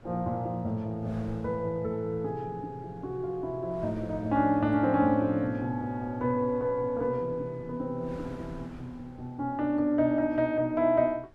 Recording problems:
wind on the microphone; below 440 Hz, SNR 23 dB

